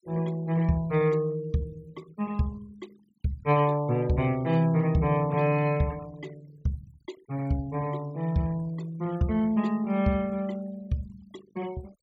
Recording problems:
noise reduction artefacts; signal-to-artefact ratio 25 dB

